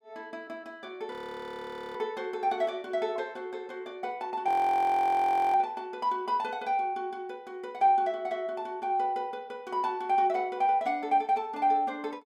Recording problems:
audio freezing; at 1 s for 1 s and at 4.5 s for 1 s

